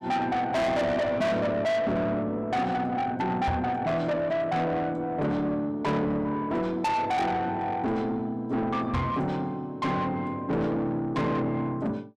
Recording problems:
distortion; soft clipping, signal-to-distortion ratio 6 dB
microphone bump; at 3.5 s and at 9 s; peak +4 dB vs average level

